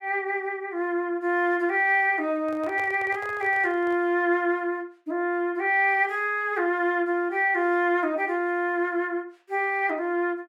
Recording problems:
handling noise; from 2.5 to 4 s; peak -11 dB vs average level

